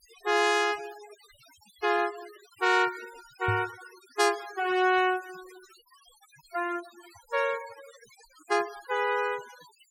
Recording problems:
noise reduction artefacts; signal-to-artefact ratio 19 dB
microphone thump; at 3.5 s; peak 0 dB vs average level

